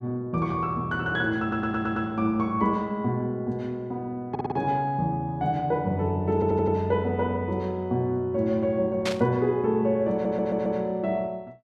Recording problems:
audio stuttering; 4 times, first at 1.5 s
burst of static; at 9 s; peak 0 dB vs average level

